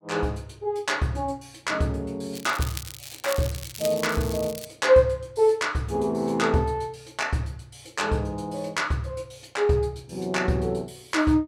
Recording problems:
crackling; from 2.5 to 4.5 s; loose cable, SNR 12 dB

